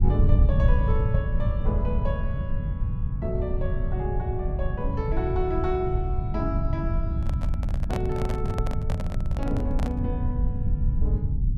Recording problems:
rumble; below 100 Hz, SNR -5 dB
microphone handling noise; from 7 to 10 s; peak +3 dB vs average level

